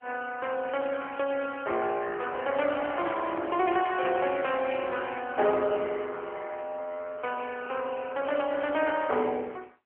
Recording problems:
telephone audio; 320 Hz to 3.2 kHz, AMR-NB

